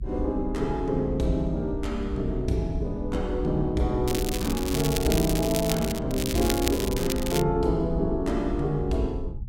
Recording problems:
low-frequency rumble; below 70 Hz, SNR 8 dB
crackle; from 4 to 6 s and from 6 to 7.5 s; loose cable, SNR 6 dB

